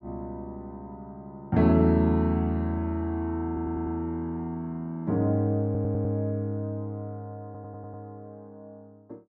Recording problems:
audio stuttering; at 3.5 s, at 5.5 s and at 7.5 s

